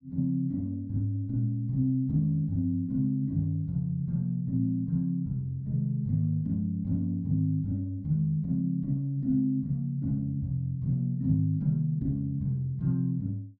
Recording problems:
none

